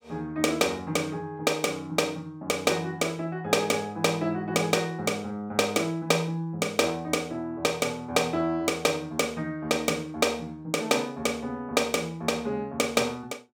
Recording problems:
none

